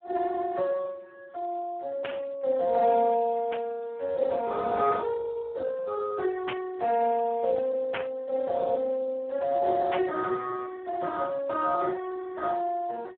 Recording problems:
phone line; 320 Hz to 2.1 kHz, Speex
static burst; 5 times, first at 2 s; peak -2 dB vs average level

